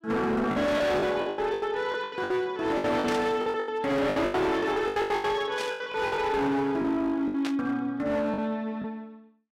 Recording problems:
distorted audio; hard clipping, signal-to-distortion ratio 8 dB
packet loss; 16% of the sound replaced, filled with the last packet
static burst; at 3 s, at 5.5 s and at 7.5 s; peak -3 dB vs average level

